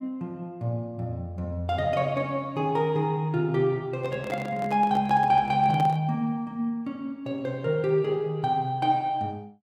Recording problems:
microphone handling noise; from 4 to 6 s; peak -5 dB vs average level

